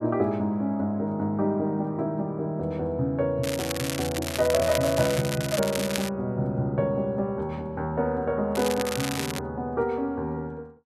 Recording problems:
crackling; from 3.5 to 6 s and at 8.5 s; loose cable, SNR 6 dB

